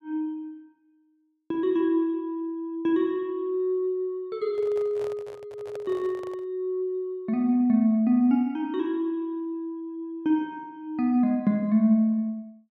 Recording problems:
handling noise; from 4.5 to 6.5 s; peak -10 dB vs average level

